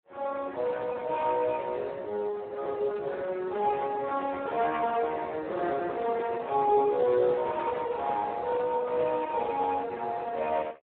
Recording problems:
telephone audio; 320 Hz to 2.2 kHz, Speex

